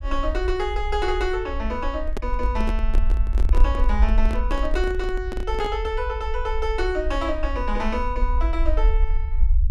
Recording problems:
low-frequency rumble; below 54 Hz, SNR -1 dB
handling noise; from 2 to 6 s; peak 0 dB vs average level

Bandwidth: 12.5 kHz